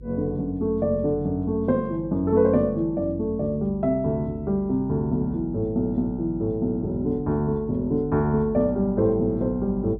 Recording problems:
electrical hum; 50 Hz, harmonics up to 400 Hz, SNR 18 dB

